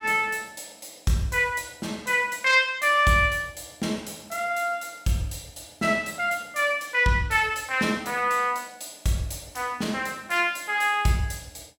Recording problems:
none

